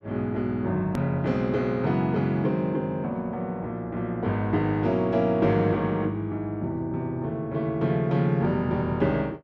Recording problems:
hard cut with a click; at 1 s

